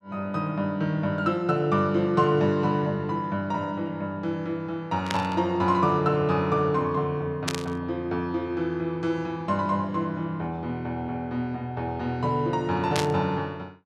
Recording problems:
burst of static; at 5 s, at 7.5 s and at 13 s; peak +3 dB vs average level

